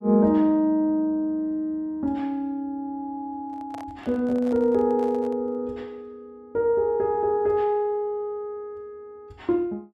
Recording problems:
handling noise; from 3.5 to 5.5 s; peak -12 dB vs average level

